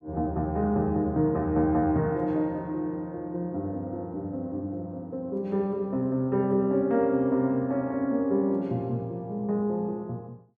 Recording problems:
none

